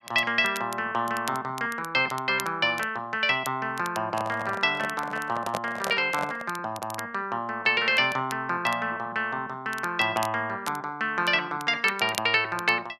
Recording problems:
crackle; vinyl, SNR 17 dB
microphone handling noise; from 4 to 6.5 s; peak 0 dB vs average level

